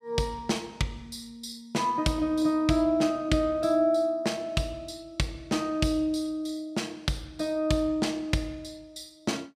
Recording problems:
none

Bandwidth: 15 kHz